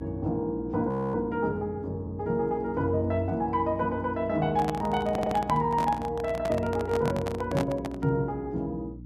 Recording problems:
hum; 60 Hz, harmonics up to 300 Hz, SNR 16 dB
frozen audio; at 1 s
microphone handling noise; from 4.5 to 8 s; peak +1 dB vs average level
stutter; at 5 s

